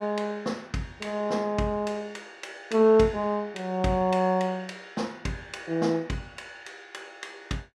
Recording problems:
none

